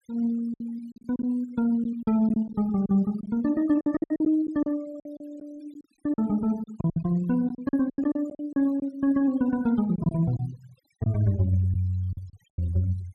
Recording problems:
noise reduction artefacts; signal-to-artefact ratio 25 dB
lost packets; 12% of the sound replaced, filled with silence

